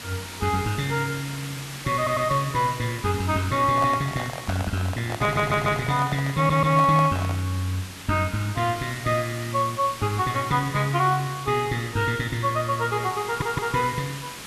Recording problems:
background hiss; slope -1 dB per octave, SNR 13 dB
stutter; 4 times, first at 2 s
handling noise; from 3.5 to 7.5 s; peak -3 dB vs average level

